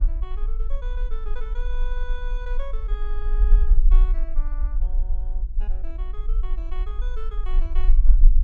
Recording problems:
hum; 60 Hz, harmonics up to 660 Hz, SNR 15 dB
low-frequency rumble; below 38 Hz, strongest tone 22 Hz, SNR -16 dB

